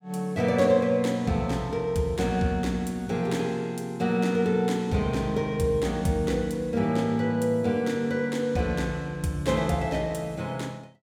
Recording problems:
none

